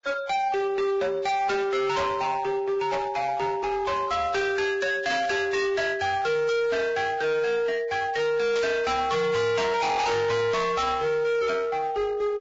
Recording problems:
lossy compression; Vorbis, log-spectral distance 3 dB, nothing above 7.3 kHz
distortion; hard clipping, uneven, signal-to-distortion ratio 6 dB
burst of static; 4 times, first at 3 s; peak -4 dB vs average level

